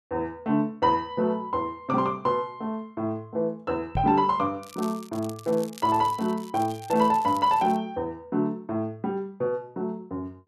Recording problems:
microphone thump; at 4 s; peak 0 dB vs average level
crackle; from 4.5 to 8 s; loose cable, SNR 20 dB

